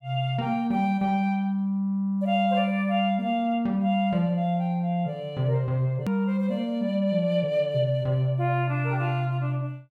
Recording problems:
click at an edit; at 6 s

